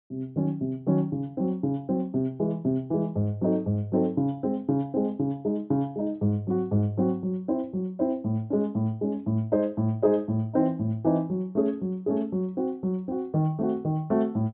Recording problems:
low-pass filter; nothing above 4 kHz

